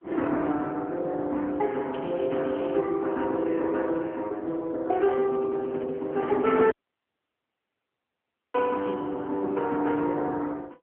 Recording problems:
telephone audio; 190 Hz to 3.1 kHz, AMR-NB
crackle; at 2 s and at 8.5 s; loose cable, SNR 23 dB
handling noise; from 5 to 6.5 s; peak -7 dB vs average level
audio cutting out; at 6.5 s for 2 s

